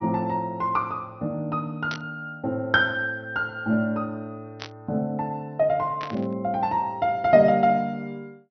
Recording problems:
treble cut off; nothing above 5.9 kHz
burst of static; at 2 s, at 4.5 s and at 6 s; peak -6 dB vs average level

